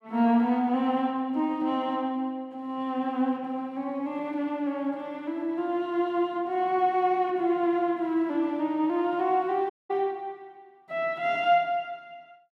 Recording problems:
dropout; at 9.5 s

